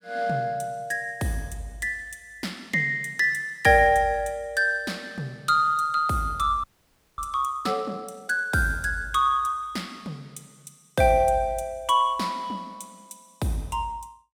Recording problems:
frozen audio; at 6.5 s for 0.5 s

